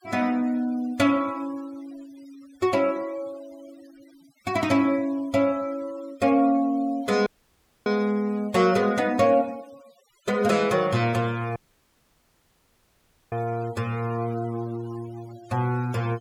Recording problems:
noise reduction artefacts; signal-to-artefact ratio 24 dB
dropout; at 7.5 s for 0.5 s and at 12 s for 2 s

